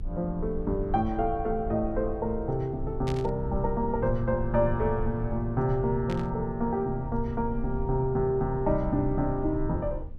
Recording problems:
low-frequency rumble; below 70 Hz, SNR 9 dB
burst of static; at 3 s and at 6 s; peak -8 dB vs average level

